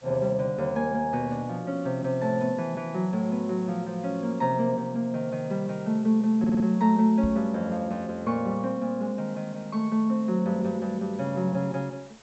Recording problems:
treble missing; nothing above 8 kHz
hiss; slope -3 dB per octave, SNR 26 dB
audio stuttering; at 6.5 s
microphone bump; at 7 s; peak -2 dB vs average level

